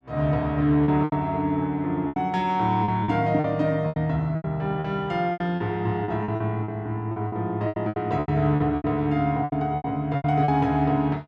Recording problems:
lost packets; 14% of the sound replaced, filled with repeated pitch periods

